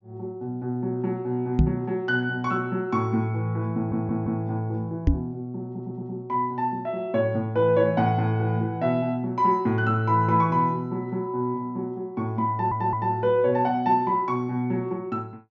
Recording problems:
low-pass filter; nothing above 7.2 kHz
knock on the microphone; at 1.5 s and at 5 s; peak +8 dB vs average level
audio stuttering; at 4 s, at 5.5 s and at 13 s

